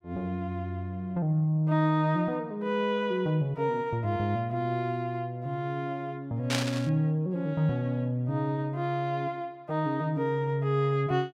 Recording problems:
static burst; at 6.5 s; peak +3 dB vs average level

